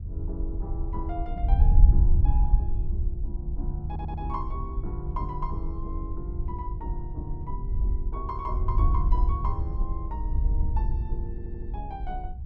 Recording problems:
wind on the microphone; below 66 Hz, SNR -9 dB
stutter; at 4 s and at 11 s

